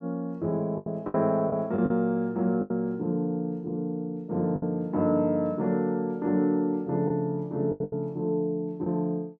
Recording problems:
packet loss; 6% of the sound replaced, filled with the last packet

